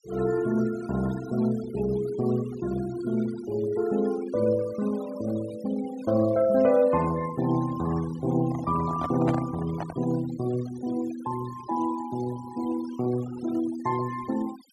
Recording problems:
denoising artefacts; signal-to-artefact ratio 17 dB
handling noise; from 8.5 to 10 s; peak +1 dB vs average level

